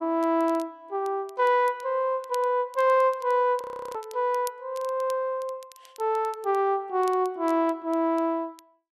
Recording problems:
crackling; vinyl, SNR 25 dB
frozen audio; at 3.5 s

